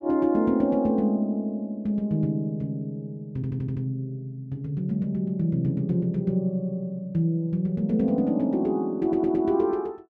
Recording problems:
stutter; at 3.5 s and at 9 s

